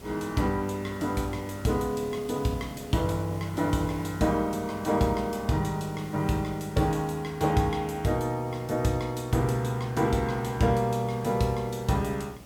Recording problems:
hum; 60 Hz, harmonics up to 600 Hz, SNR 24 dB
background hiss; SNR 18 dB

